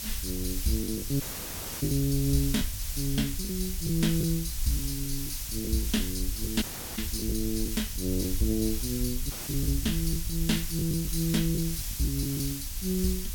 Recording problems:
hum; 50 Hz, harmonics up to 300 Hz, SNR 20 dB
hiss; slope +3 dB per octave, SNR 4 dB
low-frequency rumble; below 60 Hz, SNR 8 dB
packet loss; 7% of the sound replaced, filled with the last packet
audio cutting out; at 1 s for 0.5 s, at 6.5 s and at 9.5 s

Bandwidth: 17 kHz